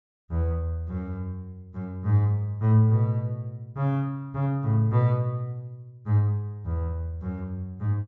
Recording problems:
treble cut off; nothing above 8 kHz

